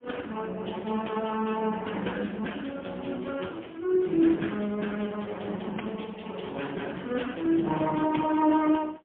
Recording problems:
telephone audio; 190 Hz to 3.3 kHz, AMR-NB, then MP3

